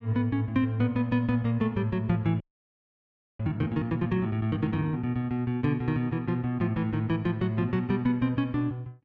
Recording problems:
audio freezing; at 2.5 s for 1 s

